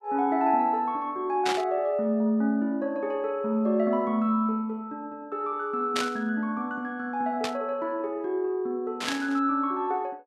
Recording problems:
static burst; 4 times, first at 1.5 s; peak +2 dB vs average level

